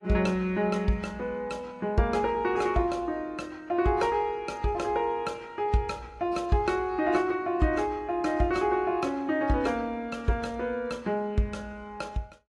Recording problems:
lossy codec; AAC, log-spectral distance 2 dB

